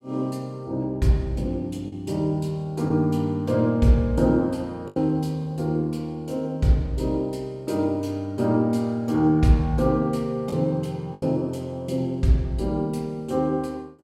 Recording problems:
lost packets; 1.7% of the sound replaced, filled with the last packet

